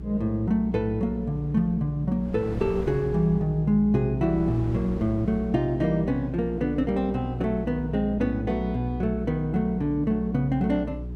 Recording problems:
electrical hum; 60 Hz, harmonics up to 420 Hz, SNR 11 dB
wind on the microphone; below 400 Hz, SNR 19 dB

